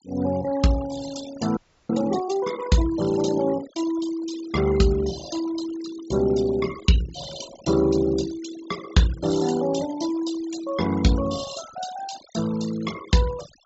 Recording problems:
treble cut off; nothing above 7.5 kHz
denoising artefacts; signal-to-artefact ratio 14 dB
frozen audio; at 1.5 s

